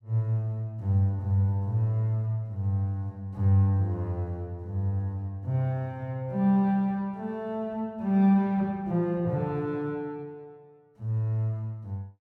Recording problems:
none

